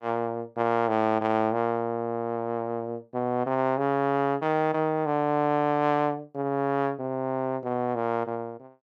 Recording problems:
none

